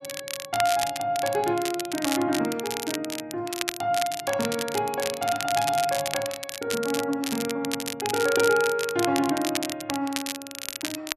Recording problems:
crackle; vinyl, SNR 6 dB

